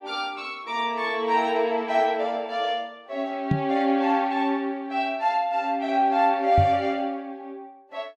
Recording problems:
microphone bump; at 3.5 s and at 6.5 s; peak +5 dB vs average level

